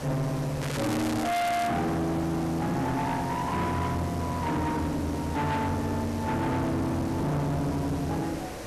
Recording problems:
distorted audio; hard clipping, uneven, signal-to-distortion ratio 6 dB
hiss; SNR 10 dB
crackling; from 0.5 to 1.5 s; loose cable, SNR 8 dB

